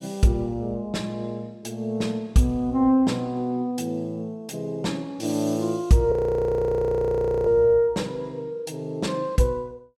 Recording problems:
frozen audio; at 6 s for 1.5 s

